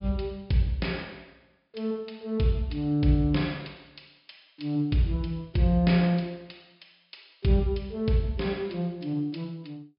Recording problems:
treble cut off; nothing above 5.5 kHz

